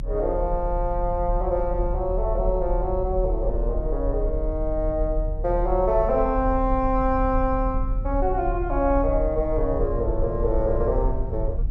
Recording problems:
low-frequency rumble; below 50 Hz, strongest tone 38 Hz, SNR 4 dB

